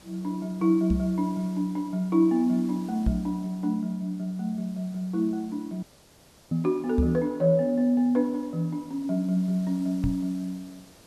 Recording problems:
background hiss; SNR 25 dB
microphone bump; 4 times, first at 1 s; peak +4 dB vs average level
dropout; at 6 s for 0.5 s

